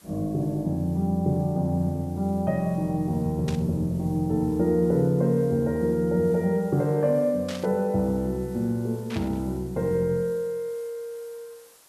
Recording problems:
background hiss; slope -1 dB per octave, SNR 27 dB
burst of static; at 3.5 s, at 7.5 s and at 9 s; peak -8 dB vs average level

